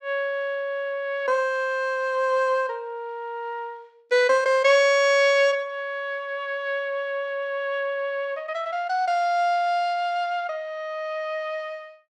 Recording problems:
none

